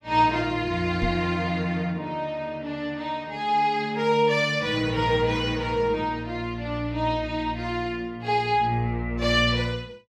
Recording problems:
microphone bump; at 1 s; peak -2 dB vs average level

